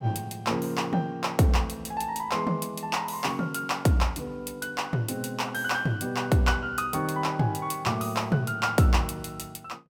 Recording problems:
none

